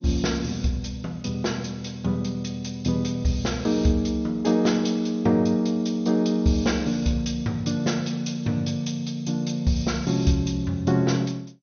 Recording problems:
lossy compression; MP2, log-spectral distance 5 dB, nothing above 6.3 kHz

